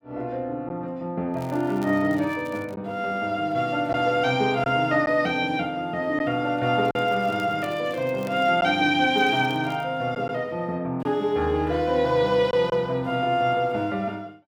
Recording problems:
lost packets; 1.4% of the sound replaced, filled with silence
crackling; from 1.5 to 3 s, from 7 to 8.5 s and at 9 s; loose cable, SNR 27 dB

